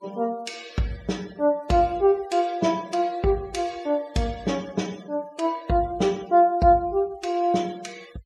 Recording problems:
noise reduction artefacts; signal-to-artefact ratio 23 dB

